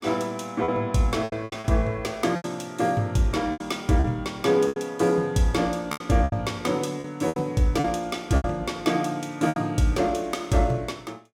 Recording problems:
lost packets; 9% of the sound replaced, filled with repeated pitch periods

